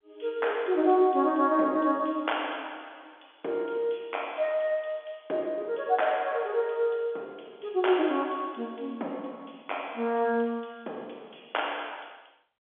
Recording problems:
telephone audio; 240 Hz to 3.5 kHz, G.711

